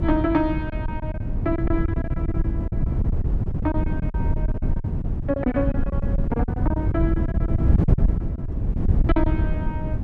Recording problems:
wind on the microphone; below 130 Hz, SNR -4 dB
packet loss; 16% of the sound replaced, filled with silence

